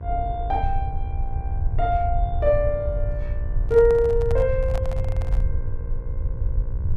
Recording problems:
electrical hum; 60 Hz, harmonics up to 1.6 kHz, SNR 20 dB
low-frequency rumble; below 80 Hz, SNR 4 dB
handling noise; from 3.5 to 5.5 s; peak -8 dB vs average level

